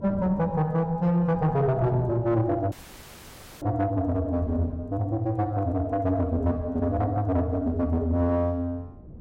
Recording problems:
distorted audio; soft clipping, signal-to-distortion ratio 11 dB
wind noise; below 270 Hz, SNR 17 dB
audio cutting out; at 2.5 s for 1 s

